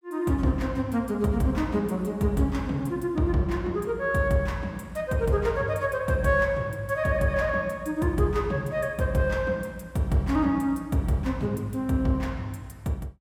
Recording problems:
none

